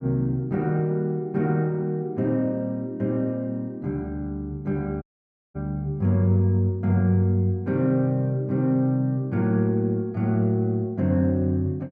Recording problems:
audio cutting out; at 5 s for 0.5 s

